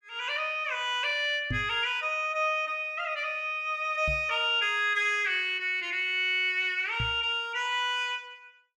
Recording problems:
knock on the microphone; at 1.5 s, at 4 s and at 7 s; peak -2 dB vs average level

